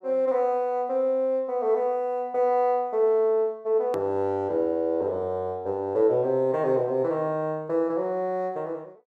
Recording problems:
click at an edit; at 4 s

